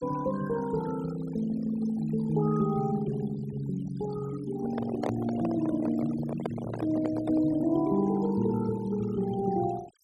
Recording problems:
denoising artefacts; signal-to-artefact ratio 17 dB
handling noise; from 4.5 to 7.5 s; peak +1 dB vs average level

